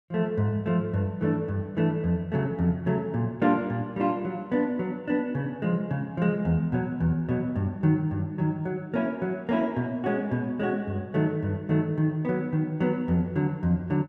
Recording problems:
none

